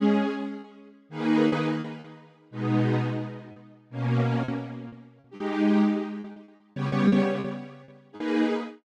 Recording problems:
lost packets; 9% of the sound replaced, filled with repeated pitch periods

